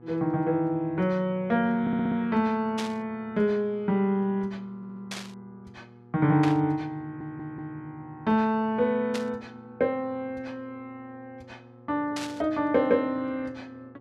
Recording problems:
hum; 60 Hz, harmonics up to 1.3 kHz, SNR 24 dB
stutter; at 2 s, at 5 s and at 7 s
burst of static; 5 times, first at 3 s; peak -3 dB vs average level

